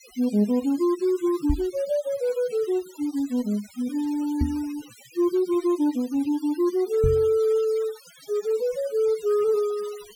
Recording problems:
denoising artefacts; signal-to-artefact ratio 21 dB
microphone thump; at 1.5 s, at 4.5 s and at 7 s; peak +4 dB vs average level

